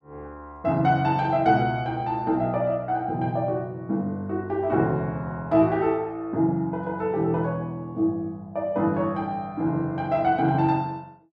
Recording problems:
none

